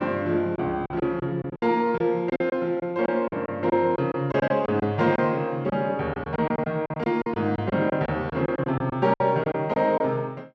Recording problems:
lost packets; 11% of the sound replaced, filled with silence

